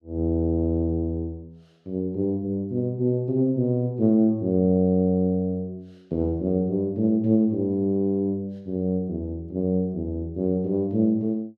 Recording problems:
none

